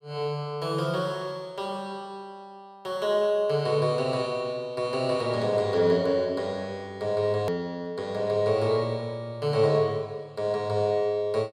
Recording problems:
hard cut with a click; at 7.5 s

